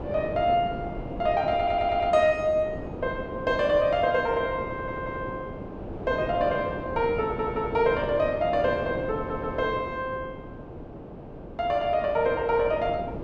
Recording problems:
wind on the microphone; below 540 Hz, SNR 10 dB
stutter; 4 times, first at 1.5 s

